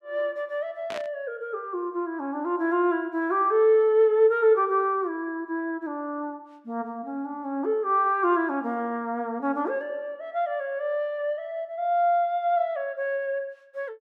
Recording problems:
static burst; at 1 s; peak -7 dB vs average level

